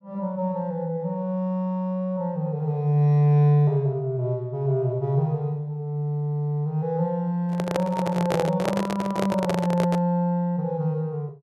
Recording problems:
handling noise; from 7.5 to 10 s; peak +2 dB vs average level

